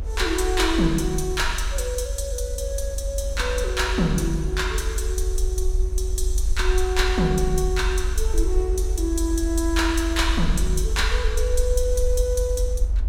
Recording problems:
rumble; below 50 Hz, SNR 2 dB
wind on the microphone; below 520 Hz, SNR 21 dB

